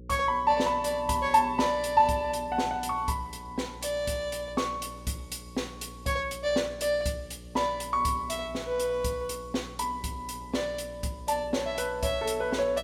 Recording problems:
hum; 60 Hz, harmonics up to 540 Hz, SNR 18 dB

